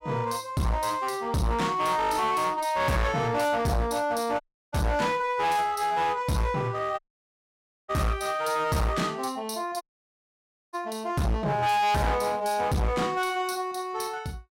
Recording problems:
distorted audio; hard clipping, uneven, signal-to-distortion ratio 6 dB
dropout; at 4.5 s, at 7 s for 1 s and at 10 s for 1 s

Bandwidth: 16 kHz